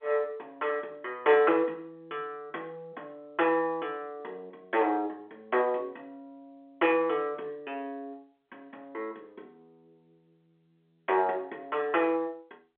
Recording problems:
phone line; 300 Hz to 3.4 kHz, G.711

